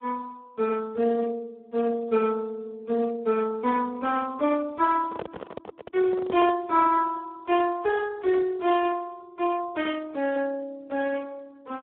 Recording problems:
phone line; 260 Hz to 2.2 kHz, Speex
microphone handling noise; from 5 to 6.5 s; peak -1 dB vs average level

